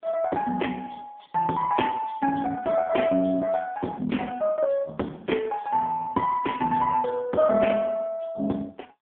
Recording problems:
telephone audio; 240 Hz to 3.3 kHz, AMR-NB

